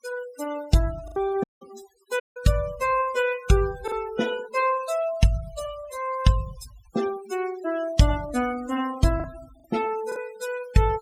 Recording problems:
denoising artefacts; signal-to-artefact ratio 14 dB
lost packets; 3% of the sound replaced, filled with the last packet
dropout; at 1.5 s and at 2 s

